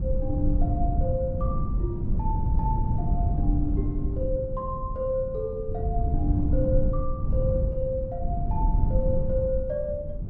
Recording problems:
wind on the microphone; below 110 Hz, SNR -3 dB

